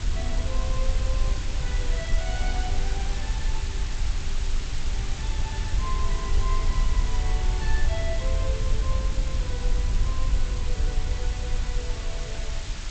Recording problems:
codec artefacts; G.722, log-spectral distance 7 dB, nothing above 7.3 kHz
background hiss; slope +1 dB per octave, SNR 0 dB
rumble; below 56 Hz, SNR -10 dB

